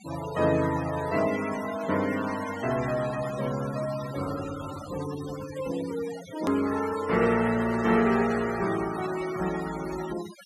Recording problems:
noise reduction artefacts; signal-to-artefact ratio 12 dB
click at an edit; at 6.5 s

